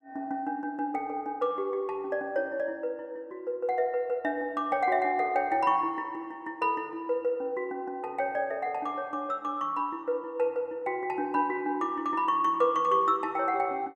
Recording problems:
none

